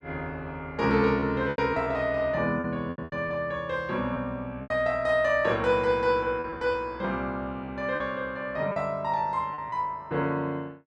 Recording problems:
packet loss; 7% of the sound replaced, filled with repeated pitch periods

